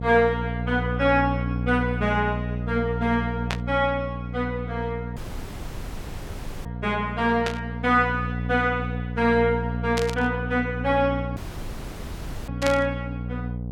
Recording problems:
hum; 60 Hz, harmonics up to 720 Hz, SNR 6 dB
burst of static; 4 times, first at 3.5 s; peak 0 dB vs average level
audio cutting out; at 5 s for 1.5 s and at 11 s for 1 s

